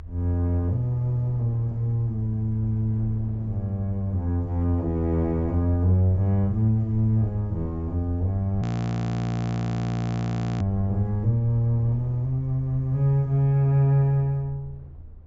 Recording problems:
treble cut off; nothing above 8 kHz
low-frequency rumble; below 82 Hz, SNR 17 dB
wind on the microphone; below 380 Hz, SNR 27 dB
frozen audio; at 8.5 s for 2 s

